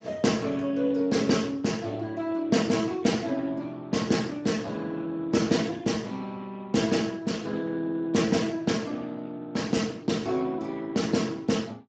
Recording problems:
lossy codec; Speex, log-spectral distance 4 dB, nothing above 7.3 kHz

